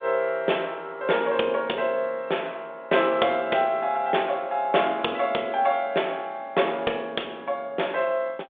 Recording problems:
phone line; 300 Hz to 3.6 kHz, G.726

